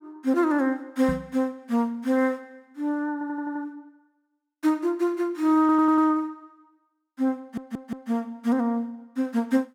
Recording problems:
knock on the microphone; at 1 s; peak -3 dB vs average level
stutter; at 3 s, at 5.5 s and at 7.5 s

